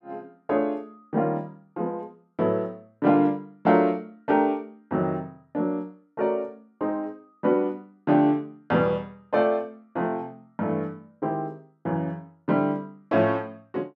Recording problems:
none

